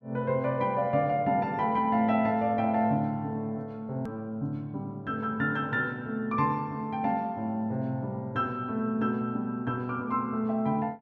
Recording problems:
edit click; at 4 s

